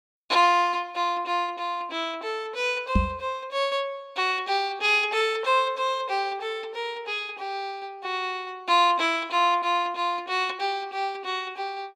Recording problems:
microphone thump; at 3 s; peak +6 dB vs average level

